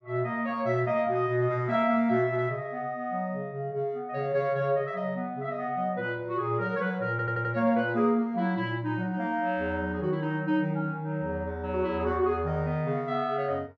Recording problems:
stutter; at 7 s

